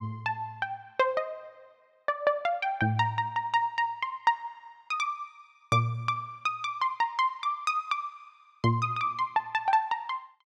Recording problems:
none

